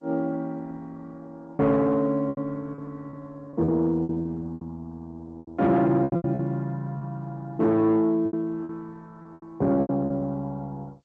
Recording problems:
lossy codec; G.722, then Opus, log-spectral distance 2 dB
distorted audio; soft clipping, signal-to-distortion ratio 10 dB
lost packets; 10% of the sound replaced, filled with repeated pitch periods

